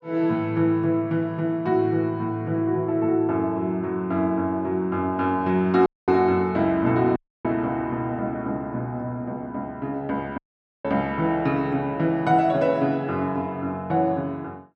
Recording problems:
audio cutting out; at 6 s, at 7 s and at 10 s

